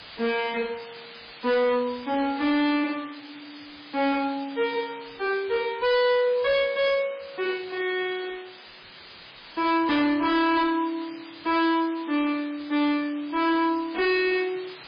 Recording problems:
lossy codec; MP3, log-spectral distance 14 dB, nothing above 4.1 kHz
distortion; hard clipping, signal-to-distortion ratio 6 dB
background hiss; SNR 18 dB

